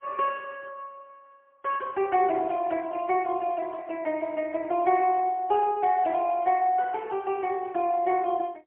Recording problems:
telephone audio; 260 Hz to 3.3 kHz, AMR-NB, then MP3

